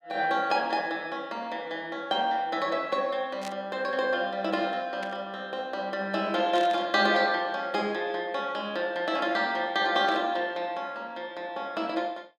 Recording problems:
burst of static; 4 times, first at 3.5 s; peak -8 dB vs average level

